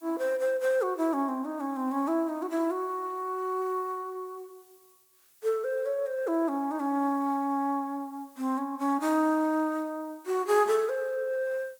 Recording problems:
hiss; slope +1 dB per octave, SNR 29 dB

